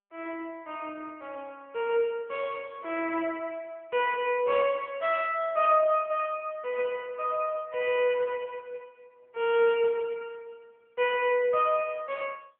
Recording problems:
telephone audio; 370 Hz to 3.3 kHz, AMR-NB

